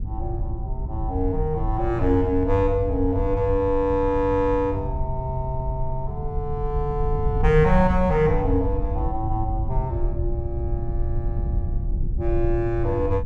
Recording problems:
wind noise; below 76 Hz, SNR 4 dB

